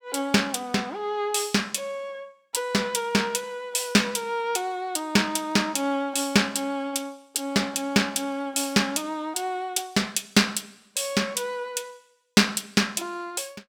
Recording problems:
none

